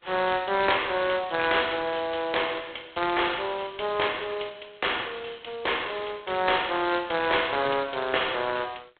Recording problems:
telephone audio; 340 Hz to 4 kHz, G.726

